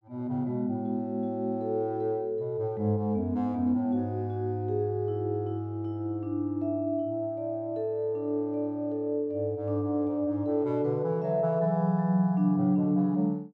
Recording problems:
none

